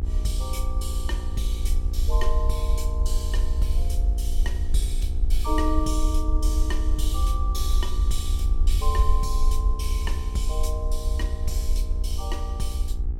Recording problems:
electrical hum; 60 Hz, harmonics up to 1.3 kHz, SNR 9 dB
low-frequency rumble; below 58 Hz, SNR -7 dB

